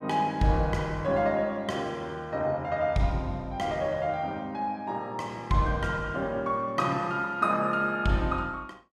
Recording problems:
none

